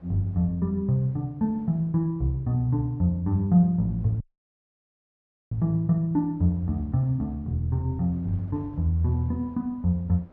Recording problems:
wind on the microphone; below 540 Hz, SNR 29 dB
audio cutting out; at 4 s for 1.5 s

